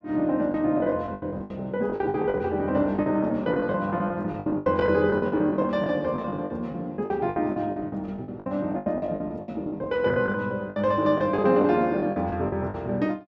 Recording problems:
packet loss; 18% of the sound replaced, filled with the last packet

